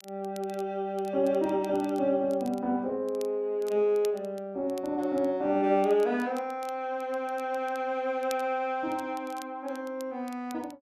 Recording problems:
crackling; vinyl, SNR 23 dB

